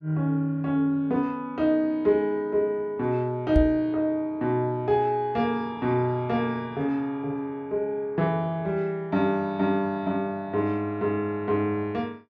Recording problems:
microphone thump; at 3.5 s; peak +6 dB vs average level

